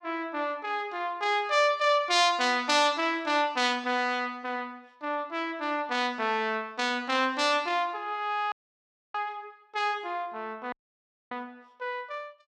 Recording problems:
audio cutting out; at 8.5 s for 0.5 s and at 11 s for 0.5 s

